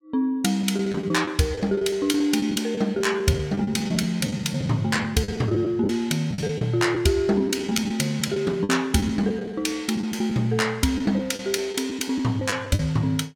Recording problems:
packet loss; 11% of the sound replaced, filled with the last packet

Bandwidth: 17.5 kHz